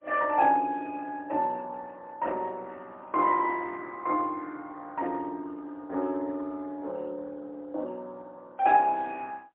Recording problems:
phone line; 300 Hz to 3.4 kHz, AMR-NB, then MP3

